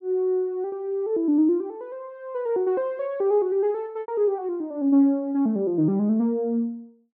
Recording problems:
lost packets; 1.8% of the sound replaced, filled with repeated pitch periods

